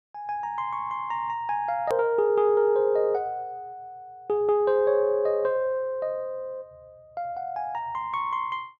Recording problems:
hard cut with a click; at 2 s

